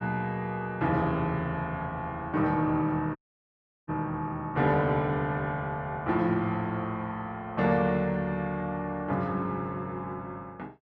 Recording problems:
audio cutting out; at 3 s for 0.5 s

